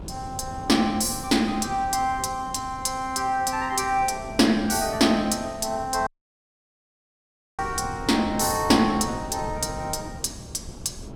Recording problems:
wind noise; below 300 Hz, SNR 15 dB
audio cutting out; at 6 s for 1.5 s

